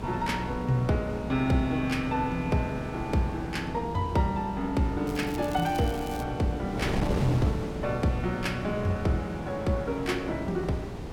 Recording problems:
hum; 60 Hz, harmonics up to 420 Hz, SNR 13 dB
wind noise; below 490 Hz, SNR 7 dB
crackle; from 5 to 6 s; loose cable, SNR 18 dB

